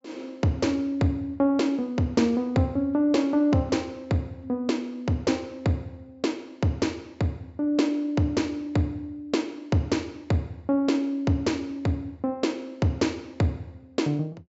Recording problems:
treble missing; nothing above 8 kHz

